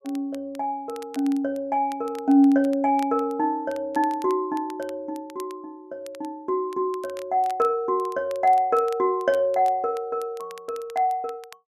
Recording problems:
crackle; vinyl, SNR 25 dB

